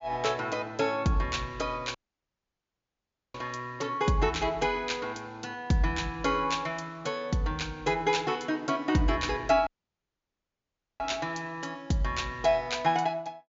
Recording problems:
low-pass filter; nothing above 7.3 kHz
audio cutting out; at 2 s for 1.5 s and at 9.5 s for 1.5 s

